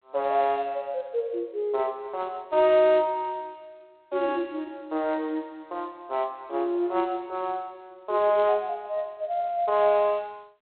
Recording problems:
telephone audio; 320 Hz to 3.7 kHz, G.726

